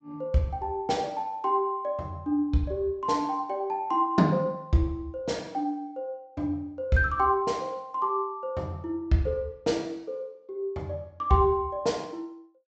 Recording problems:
treble missing; nothing above 8 kHz

